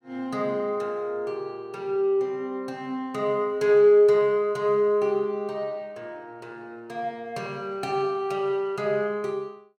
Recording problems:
none

